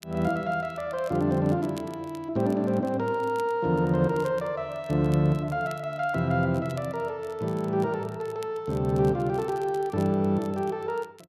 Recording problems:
crackle; vinyl, SNR 26 dB

